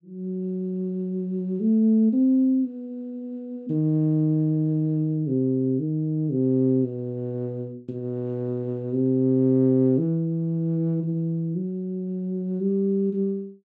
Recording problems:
none

